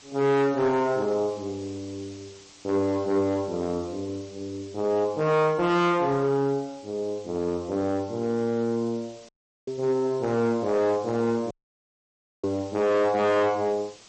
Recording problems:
codec artefacts; MP3, log-spectral distance 3 dB, nothing above 8.2 kHz
distorted audio; hard clipping, signal-to-distortion ratio 11 dB
hiss; SNR 24 dB
audio cutting out; at 9.5 s and at 12 s for 1 s

